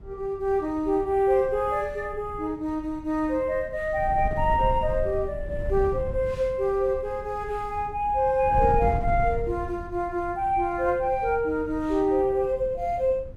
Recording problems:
wind on the microphone; below 100 Hz, SNR 12 dB

